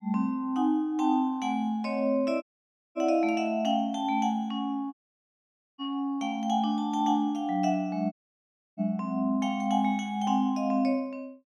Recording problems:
dropout; at 2.5 s for 0.5 s, at 5 s for 1 s and at 8 s for 0.5 s

